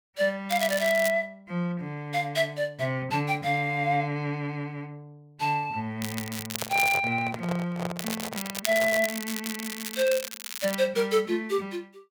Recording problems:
crackling; at 0.5 s, at 6 s and from 8 to 11 s; loose cable, SNR 7 dB
handling noise; from 6.5 to 9 s; peak -2 dB vs average level

